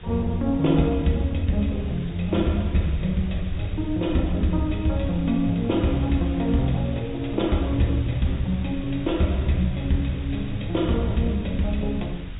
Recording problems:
treble missing; nothing above 4 kHz
hiss; SNR 21 dB
rumble; below 78 Hz, SNR 14 dB

